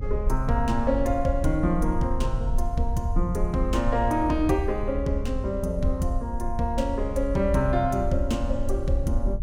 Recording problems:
electrical hum; 50 Hz, harmonics up to 600 Hz, SNR 22 dB
low-frequency rumble; below 62 Hz, SNR 4 dB

